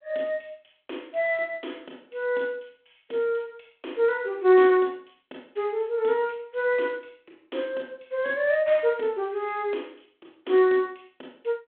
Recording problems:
telephone audio; 220 Hz to 3.5 kHz, G.726

